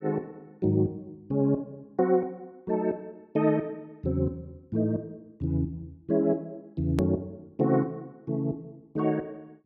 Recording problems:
hard cut with a click; at 7 s

